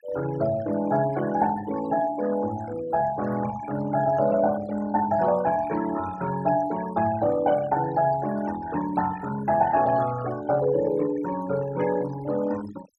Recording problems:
denoising artefacts; signal-to-artefact ratio 15 dB

